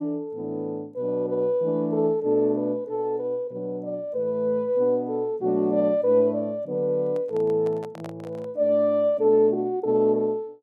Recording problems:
microphone handling noise; from 7 to 8.5 s; peak -11 dB vs average level

